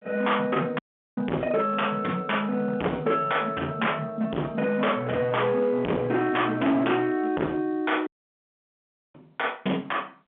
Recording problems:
telephone audio; 170 Hz to 3.5 kHz, G.711
distorted audio; hard clipping, signal-to-distortion ratio 6 dB
dropout; at 1 s and at 8 s for 1 s

